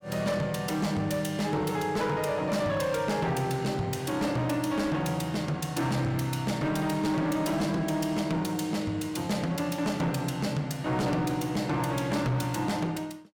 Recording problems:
distortion; hard clipping, uneven, signal-to-distortion ratio 11 dB

